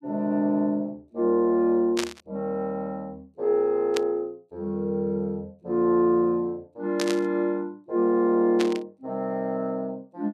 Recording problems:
burst of static; 4 times, first at 2 s; peak +1 dB vs average level

